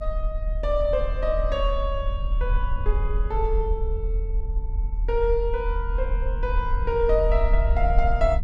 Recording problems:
low-frequency rumble; below 50 Hz, strongest tone 38 Hz, SNR 0 dB

